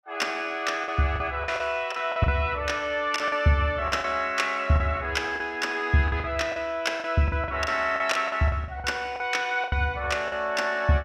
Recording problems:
packet loss; 11% of the sound replaced, filled with the last packet

